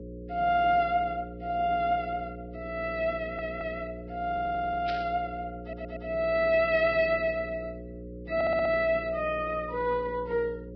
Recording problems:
lossy compression; Vorbis, log-spectral distance 2 dB
hum; 60 Hz, harmonics up to 540 Hz, SNR 13 dB
audio stuttering; 4 times, first at 3 s
static burst; at 5 s; peak -6 dB vs average level

